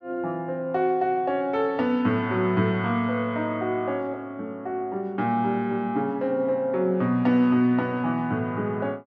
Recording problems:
none

